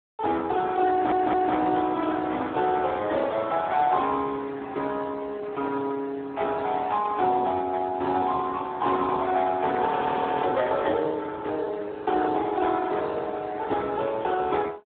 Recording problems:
telephone audio; 220 Hz to 3.6 kHz, Speex
audio stuttering; at 1 s
audio freezing; at 10 s for 0.5 s

